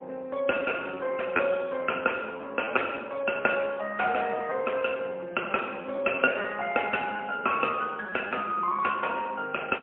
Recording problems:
phone line; 300 Hz to 3.1 kHz, AMR-NB, then MP3
lost packets; 13% of the sound replaced, filled with repeated pitch periods

